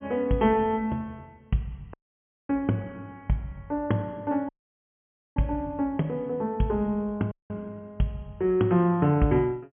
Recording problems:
low-pass filter; nothing above 3.3 kHz
dropout; at 2 s for 0.5 s, at 4.5 s for 1 s and at 7.5 s

